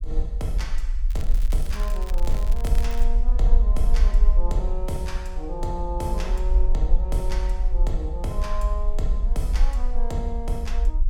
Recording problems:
rumble; below 42 Hz, strongest tone 20 Hz, SNR -6 dB
crackling; from 1 to 3 s; loose cable, SNR 12 dB

